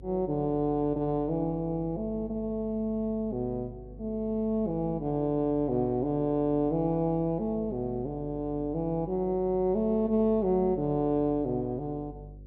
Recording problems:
electrical hum; 50 Hz, harmonics up to 550 Hz, SNR 18 dB

